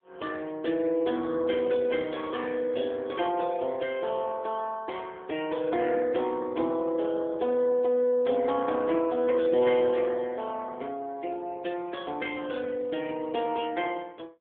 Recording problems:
phone line; 260 Hz to 3.3 kHz, AMR-NB

